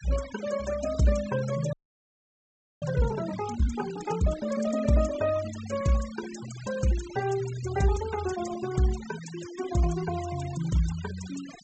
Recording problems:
treble missing; nothing above 8 kHz
denoising artefacts; signal-to-artefact ratio 15 dB
audio freezing; at 1.5 s for 1 s

